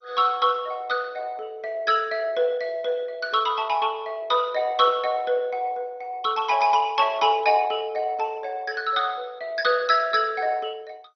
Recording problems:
codec artefacts; MP2, log-spectral distance 3 dB, nothing above 5.2 kHz

